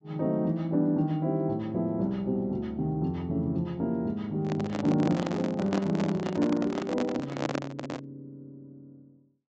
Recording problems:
treble missing; nothing above 8 kHz
handling noise; from 4.5 to 8 s; peak +3 dB vs average level

